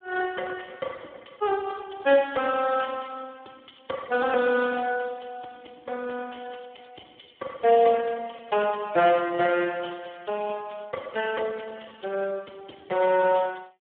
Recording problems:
phone line; 300 Hz to 2 kHz, Speex

